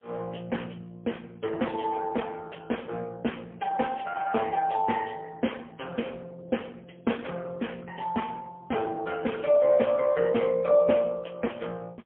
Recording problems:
phone line; 260 Hz to 3.4 kHz, AMR-NB, then MP3

